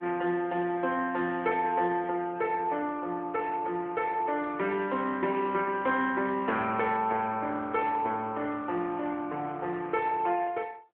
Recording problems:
telephone audio; 240 Hz to 3.4 kHz, AMR-NB

